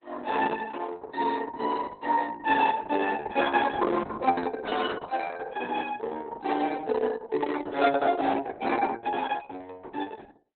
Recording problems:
codec artefacts; Opus, log-spectral distance 5 dB, nothing above 3.7 kHz

